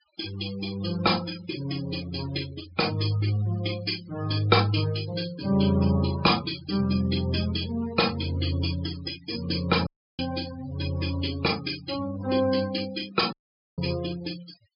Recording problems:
treble cut off; nothing above 5.5 kHz
noise reduction artefacts; signal-to-artefact ratio 15 dB
dropout; at 10 s and at 13 s

